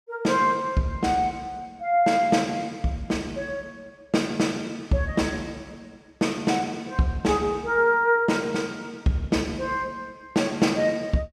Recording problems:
none

